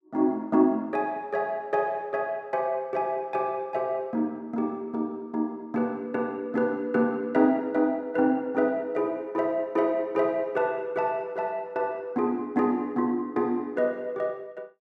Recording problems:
none

